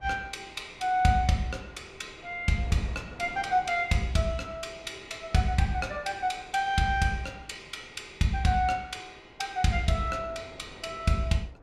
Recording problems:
wind on the microphone; below 680 Hz, SNR 22 dB

